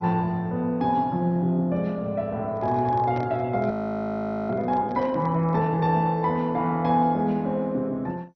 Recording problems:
lossy compression; MP2, log-spectral distance 2 dB, nothing above 5.2 kHz
microphone handling noise; from 2.5 to 5.5 s; peak -10 dB vs average level
frozen audio; at 3.5 s for 1 s

